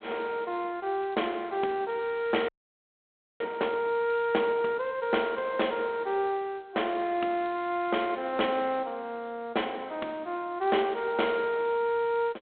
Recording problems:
telephone audio; 260 Hz to 3.5 kHz, G.726
audio freezing; at 2.5 s for 1 s

